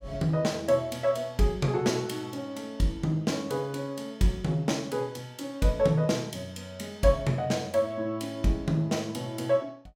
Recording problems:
none

